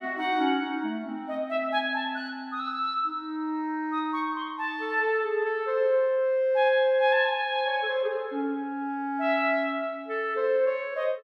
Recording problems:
none

